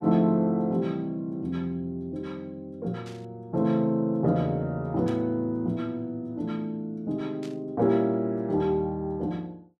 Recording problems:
burst of static; at 3 s, at 5 s and at 7.5 s; peak -14 dB vs average level

